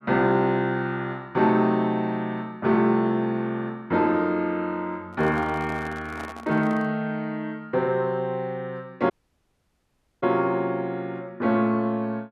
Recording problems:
microphone handling noise; from 5 to 7 s; peak -9 dB vs average level
audio cutting out; at 9 s for 1 s

